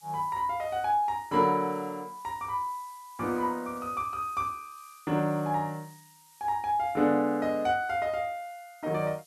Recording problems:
background hiss; slope +4 dB per octave, SNR 25 dB

